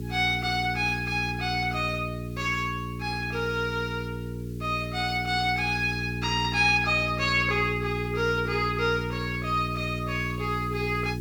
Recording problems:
electrical hum; 60 Hz, harmonics up to 420 Hz, SNR 7 dB
background hiss; slope +4 dB per octave, SNR 27 dB

